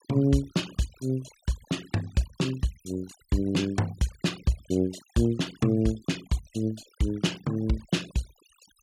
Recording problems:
denoising artefacts; signal-to-artefact ratio 19 dB

